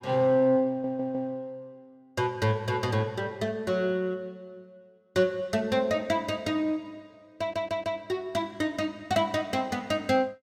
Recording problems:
audio stuttering; at 0.5 s and at 7.5 s

